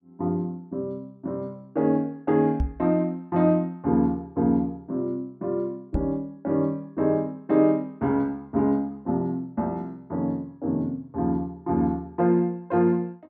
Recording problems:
microphone bump; at 2.5 s and at 6 s; peak +3 dB vs average level

